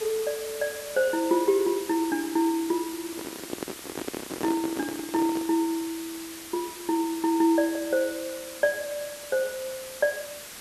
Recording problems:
background hiss; slope 0 dB per octave, SNR 11 dB
microphone handling noise; from 3 to 5.5 s; peak -1 dB vs average level

